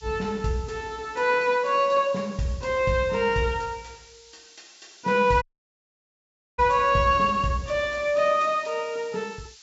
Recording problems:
low-pass filter; nothing above 8 kHz
hiss; slope +6 dB per octave, SNR 25 dB
dropout; at 5.5 s for 1 s

